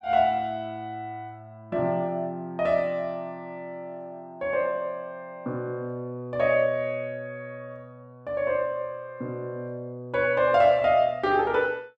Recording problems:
none

